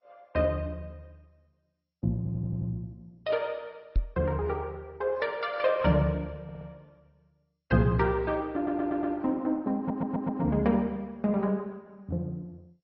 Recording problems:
lossy codec; MP2, then AAC, log-spectral distance 2 dB, nothing above 5.3 kHz
audio stuttering; 4 times, first at 2 s
microphone bump; at 4 s; peak +5 dB vs average level

